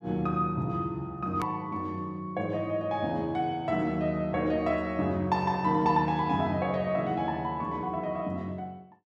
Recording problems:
edit click; at 1.5 s

